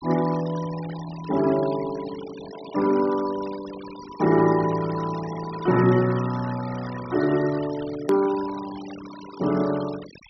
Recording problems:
treble missing; nothing above 5.8 kHz
denoising artefacts; signal-to-artefact ratio 16 dB
hard cut with a click; at 8 s

